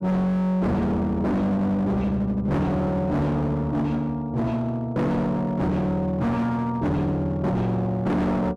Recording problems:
distortion; hard clipping, uneven, signal-to-distortion ratio 6 dB

